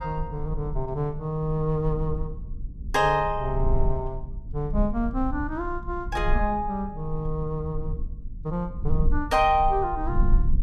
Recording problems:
low-frequency rumble; below 54 Hz, strongest tone 24 Hz, SNR 5 dB

